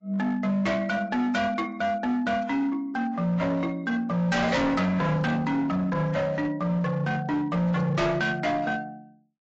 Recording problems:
lossy compression; AAC, log-spectral distance 2 dB, nothing above 7.6 kHz
distortion; hard clipping, signal-to-distortion ratio 7 dB

